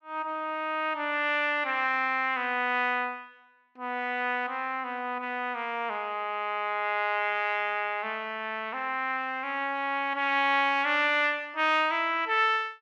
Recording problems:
none

